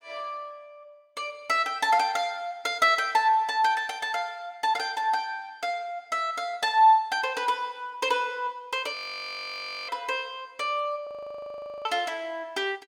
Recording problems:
frozen audio; at 9 s for 1 s and at 11 s for 1 s

